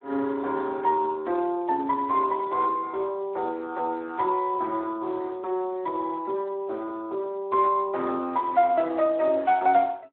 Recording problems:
phone line; 240 Hz to 2 kHz, Speex

